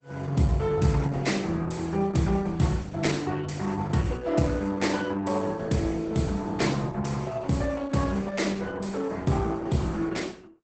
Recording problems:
lossy compression; Opus, log-spectral distance 4 dB, nothing above 8.2 kHz

